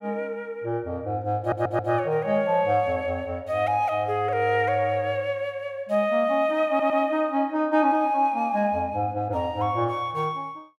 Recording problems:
audio stuttering; at 1.5 s and at 6.5 s

